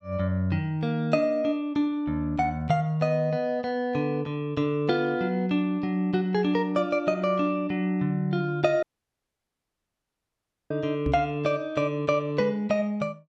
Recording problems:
dropout; at 9 s for 2 s
microphone bump; at 11 s; peak +1 dB vs average level

